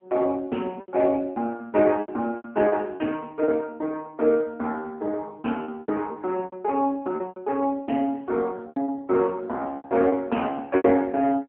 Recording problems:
telephone audio; 190 Hz to 3.1 kHz, AMR-NB
lost packets; 11% of the sound replaced, filled with repeated pitch periods

